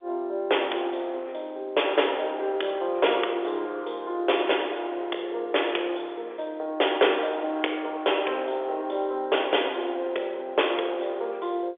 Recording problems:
telephone audio; 320 Hz to 3.6 kHz, G.711

